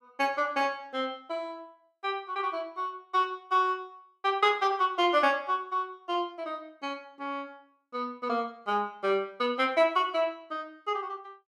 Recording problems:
none

